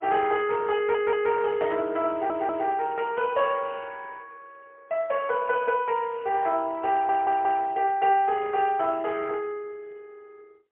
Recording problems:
telephone audio; 340 Hz to 3.2 kHz, AMR-NB, then MP3
audio stuttering; at 1 s, at 2 s and at 7 s

